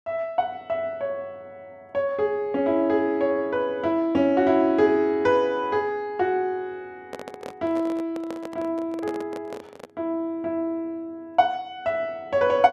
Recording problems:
microphone handling noise; from 7 to 10 s; peak -6 dB vs average level

